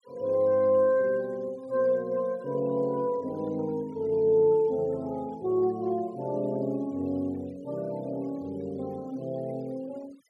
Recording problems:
noise reduction artefacts; signal-to-artefact ratio 28 dB

